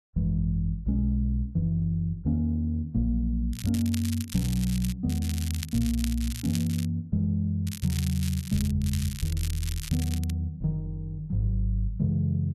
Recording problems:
crackle; 4 times, first at 3.5 s; loose cable, SNR 11 dB

